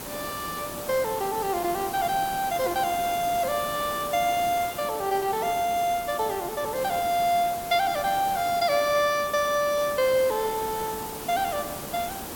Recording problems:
background hiss; SNR 9 dB

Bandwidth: 17 kHz